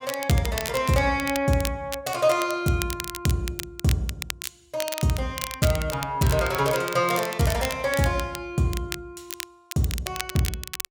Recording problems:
crackling; vinyl, SNR 9 dB

